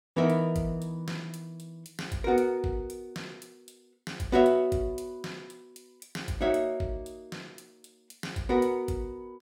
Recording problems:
none

